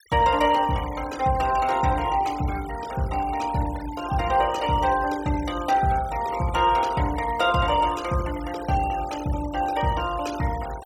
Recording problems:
noise reduction artefacts; signal-to-artefact ratio 17 dB

